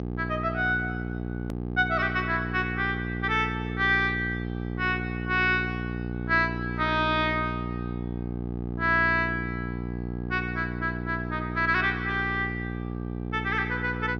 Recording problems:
treble cut off; nothing above 6.2 kHz
hum; 60 Hz, harmonics up to 900 Hz, SNR 6 dB
edit click; at 1.5 s

